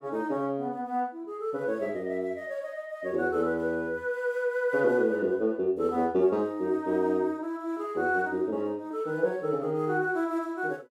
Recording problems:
none

